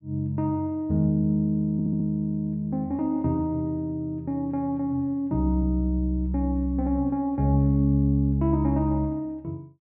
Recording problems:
stutter; at 1.5 s

